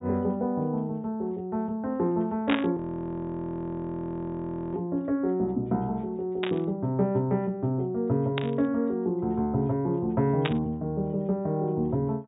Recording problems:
low-pass filter; nothing above 4 kHz
burst of static; 4 times, first at 2.5 s; peak +3 dB vs average level
audio freezing; at 3 s for 2 s

